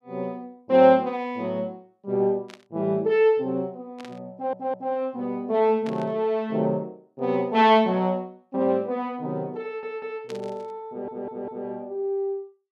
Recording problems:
static burst; 4 times, first at 2.5 s; peak -13 dB vs average level
stutter; at 4.5 s, at 9.5 s and at 11 s

